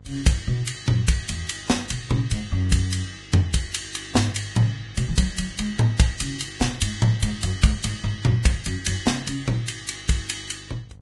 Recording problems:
lossy compression; Vorbis, log-spectral distance 5 dB, nothing above 11 kHz
electrical hum; 50 Hz, harmonics up to 750 Hz, SNR 23 dB

